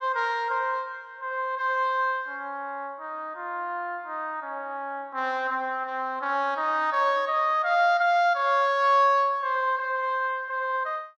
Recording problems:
none

